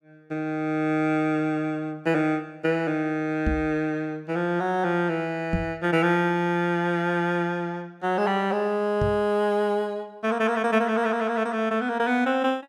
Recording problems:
knock on the microphone; at 3.5 s, at 5.5 s and at 9 s; peak +2 dB vs average level

